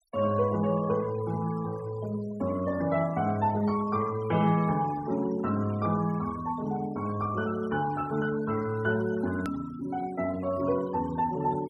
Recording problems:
noise reduction artefacts; signal-to-artefact ratio 19 dB
hard cut with a click; at 9.5 s

